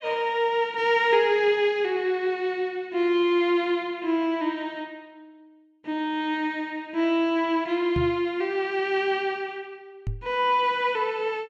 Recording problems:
knock on the microphone; at 8 s and at 10 s; peak -1 dB vs average level

